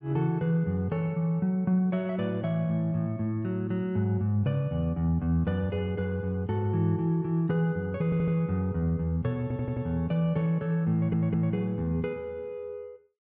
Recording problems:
stutter; at 8 s, at 9.5 s and at 11 s

